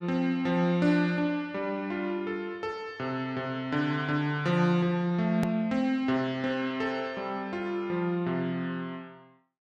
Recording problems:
click at an edit; at 5.5 s

